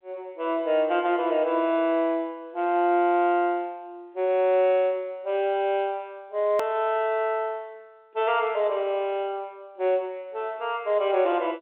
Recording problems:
phone line; 260 Hz to 3.6 kHz, G.711
click at an edit; at 6.5 s

